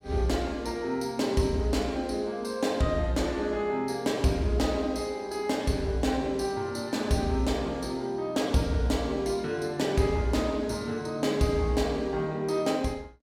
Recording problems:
none

